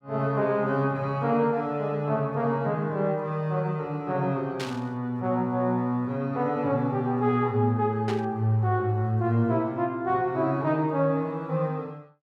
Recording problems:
burst of static; at 4.5 s and at 8 s; peak -5 dB vs average level

